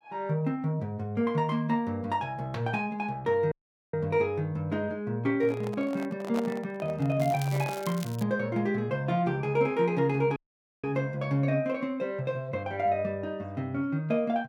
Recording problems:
dropout; at 3.5 s and at 10 s
handling noise; from 5.5 to 8 s; peak -3 dB vs average level
crackling; from 7 to 8 s; loose cable, SNR 15 dB

